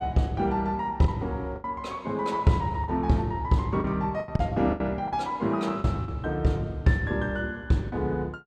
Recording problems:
lost packets; 7% of the sound replaced, filled with the last packet

